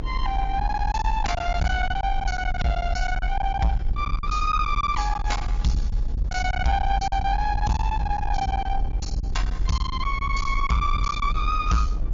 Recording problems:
codec artefacts; MP3, log-spectral distance 2 dB, nothing above 6.3 kHz
distorted audio; soft clipping, signal-to-distortion ratio 10 dB
low-frequency rumble; below 60 Hz, SNR 3 dB
packet loss; 13% of the sound replaced, filled with silence

